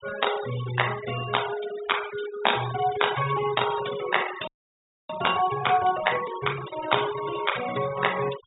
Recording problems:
treble missing; nothing above 4 kHz
denoising artefacts; signal-to-artefact ratio 10 dB
audio freezing; at 4.5 s for 0.5 s

